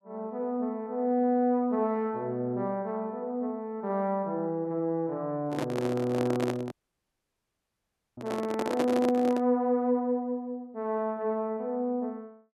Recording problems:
microphone handling noise; from 5.5 to 9.5 s; peak +3 dB vs average level
audio cutting out; at 6.5 s for 1.5 s

